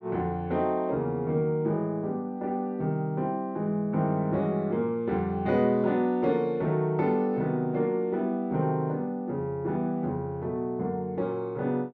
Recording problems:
none

